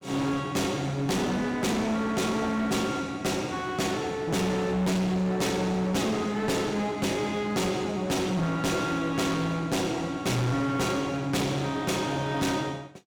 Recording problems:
distorted audio; hard clipping, uneven, signal-to-distortion ratio 7 dB

